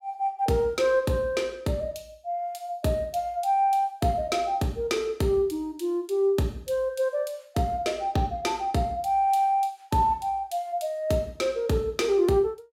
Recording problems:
none

